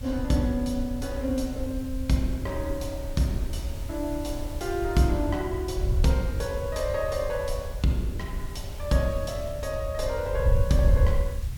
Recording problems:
hiss; slope 0 dB per octave, SNR 19 dB
wind noise; below 84 Hz, SNR 3 dB

